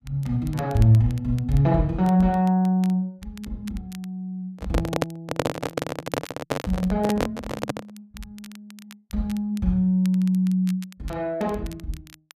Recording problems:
crackling; vinyl, SNR 24 dB
handling noise; from 4.5 to 8 s; peak +4 dB vs average level

